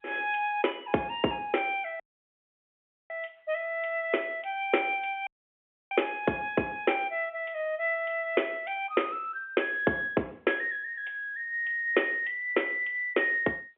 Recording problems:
phone line; 190 Hz to 3.4 kHz, G.711
audio cutting out; at 2 s for 1 s and at 5.5 s for 0.5 s

